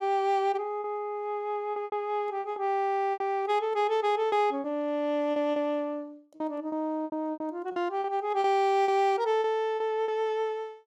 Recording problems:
packet loss; 9% of the sound replaced, filled with repeated pitch periods

